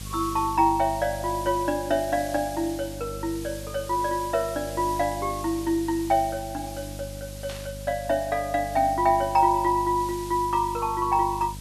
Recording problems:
hum; 50 Hz, harmonics up to 550 Hz, SNR 15 dB
background hiss; SNR 16 dB
burst of static; at 7.5 s; peak -10 dB vs average level

